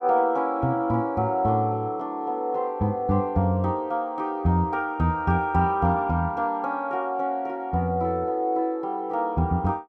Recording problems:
none

